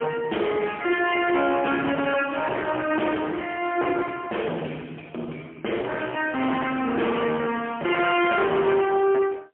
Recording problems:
telephone audio; 260 Hz to 3.2 kHz, AMR-NB, then MP3
distortion; hard clipping, signal-to-distortion ratio 8 dB

